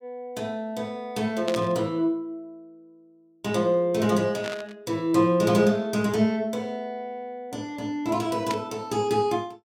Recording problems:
static burst; at 1.5 s, at 4.5 s and at 8.5 s; peak -3 dB vs average level

